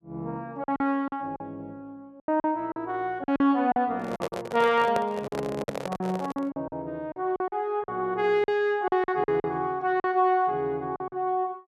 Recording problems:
lost packets; 11% of the sound replaced, filled with silence
microphone handling noise; from 4 to 6.5 s; peak +1 dB vs average level

